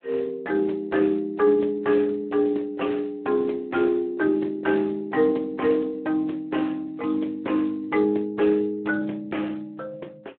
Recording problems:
telephone audio; 260 Hz to 3.2 kHz, Speex

